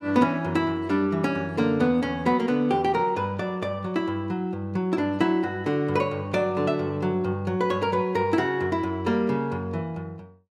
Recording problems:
none

